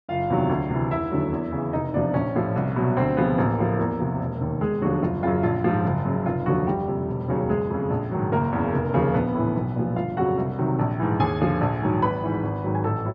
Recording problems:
none

